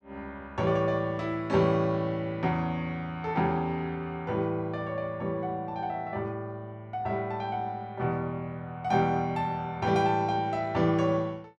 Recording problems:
none

